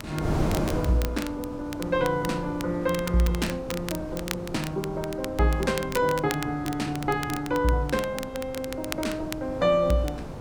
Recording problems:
wind noise; below 500 Hz, SNR 9 dB
crackling; vinyl, SNR 12 dB

